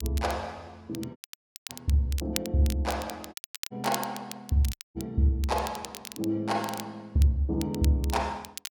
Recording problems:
crackle; vinyl, SNR 12 dB
dropout; at 1 s for 0.5 s, at 3.5 s and at 4.5 s

